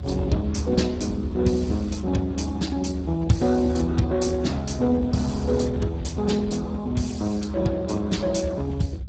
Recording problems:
codec artefacts; Speex, log-spectral distance 3 dB, nothing above 7.6 kHz
low-frequency rumble; below 94 Hz, strongest tone 76 Hz, SNR 9 dB

